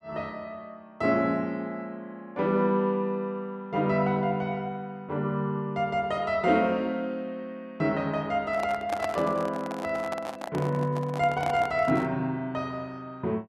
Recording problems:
microphone handling noise; from 8.5 to 12 s; peak 0 dB vs average level

